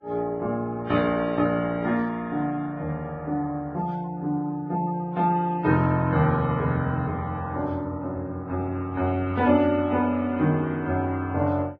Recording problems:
lossy compression; Vorbis, then AAC, log-spectral distance 2 dB, nothing above 6.3 kHz

